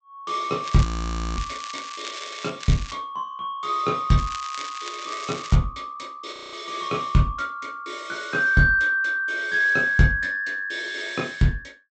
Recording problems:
treble cut off; nothing above 8 kHz
crackle; from 0.5 to 2.5 s, at 2.5 s and from 4 to 5.5 s; loose cable, SNR 13 dB
audio freezing; at 1 s for 0.5 s and at 6.5 s

